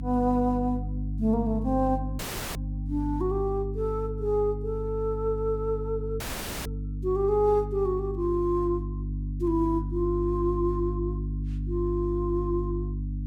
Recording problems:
hum; 50 Hz, harmonics up to 300 Hz, SNR 5 dB
audio cutting out; at 2 s and at 6 s

